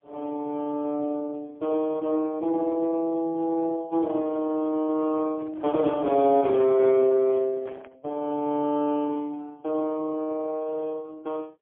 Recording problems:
phone line; 300 Hz to 2.2 kHz, AMR-NB, then MP3
handling noise; from 5 to 8 s; peak -9 dB vs average level

